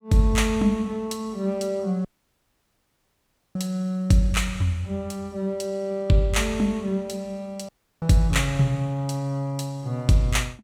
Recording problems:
dropout; at 2 s for 1.5 s and at 7.5 s

